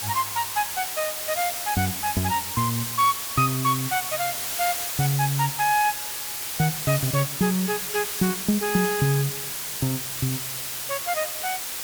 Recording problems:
background hiss; slope +1 dB per octave, SNR 2 dB

